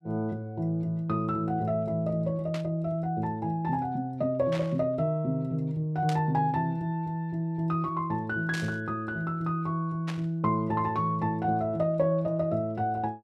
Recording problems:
static burst; 5 times, first at 2.5 s; peak -4 dB vs average level

